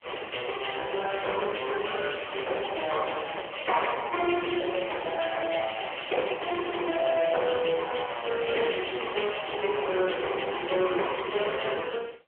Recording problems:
telephone audio; 320 Hz to 3.3 kHz, AMR-NB
distortion; soft clipping, signal-to-distortion ratio 15 dB

